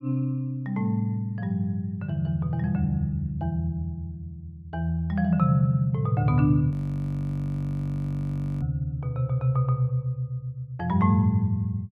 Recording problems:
frozen audio; at 6.5 s for 2 s

